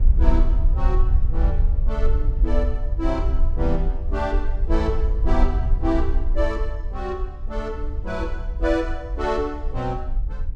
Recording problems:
wind noise; below 56 Hz, SNR -3 dB

